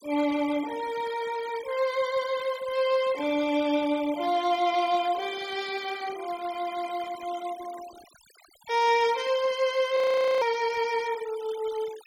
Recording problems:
denoising artefacts; signal-to-artefact ratio 18 dB
audio freezing; at 10 s

